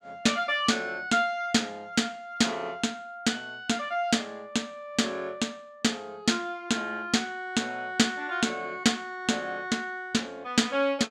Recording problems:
none

